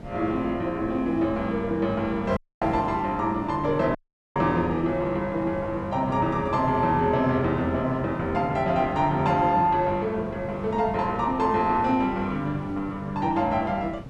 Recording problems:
wind on the microphone; below 320 Hz, SNR 15 dB
dropout; at 2.5 s and at 4 s

